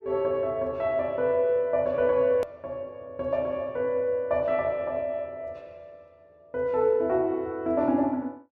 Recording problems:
edit click; at 2.5 s

